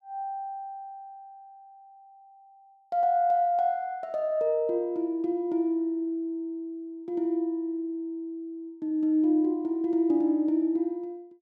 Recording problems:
none

